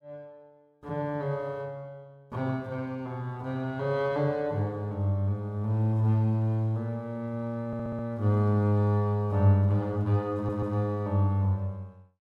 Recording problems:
audio stuttering; at 7.5 s and at 10 s

